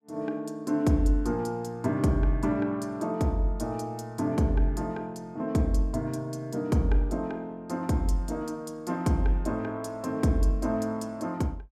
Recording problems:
none

